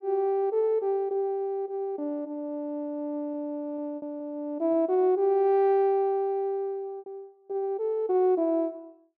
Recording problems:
lost packets; 3% of the sound replaced, filled with repeated pitch periods

